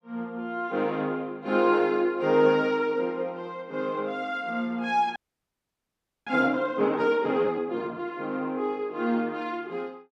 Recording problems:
frozen audio; at 5 s for 1 s

